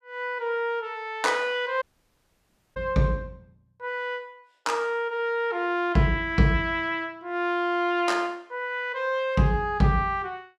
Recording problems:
dropout; at 2 s for 1 s

